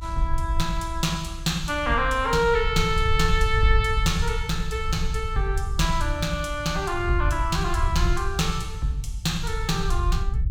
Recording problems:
low-frequency rumble; below 72 Hz, SNR 4 dB

